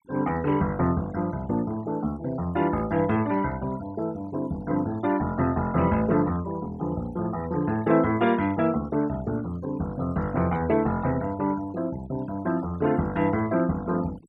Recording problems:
noise reduction artefacts; signal-to-artefact ratio 20 dB

